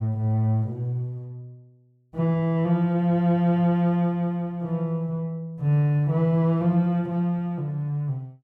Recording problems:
none

